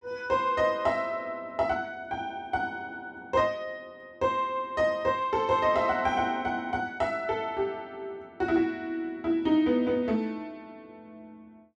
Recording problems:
none

